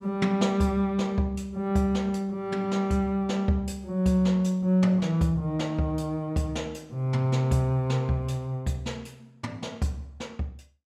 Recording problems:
none

